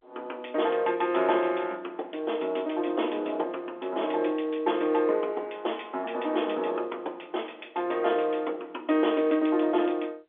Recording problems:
telephone audio; 260 Hz to 3.5 kHz, G.711

